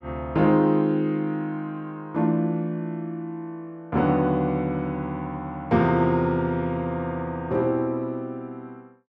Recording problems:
none

